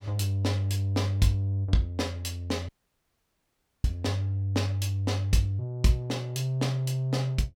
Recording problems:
dropout; at 2.5 s for 1 s

